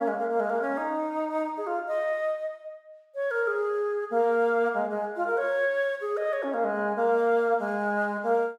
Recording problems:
none

